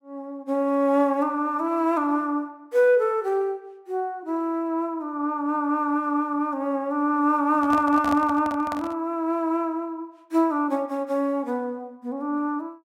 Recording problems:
handling noise; from 7.5 to 9 s; peak -4 dB vs average level

